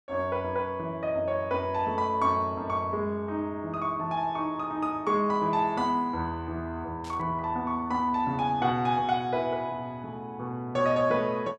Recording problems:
static burst; at 7 s; peak -14 dB vs average level

